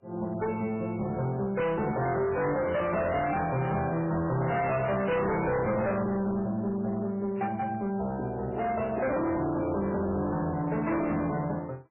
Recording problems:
codec artefacts; MP3, log-spectral distance 3 dB, nothing above 2.5 kHz
distorted audio; hard clipping, signal-to-distortion ratio 7 dB

